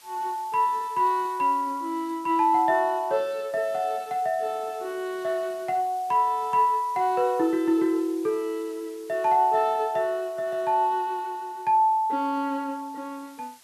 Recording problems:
hiss; slope +2 dB per octave, SNR 26 dB

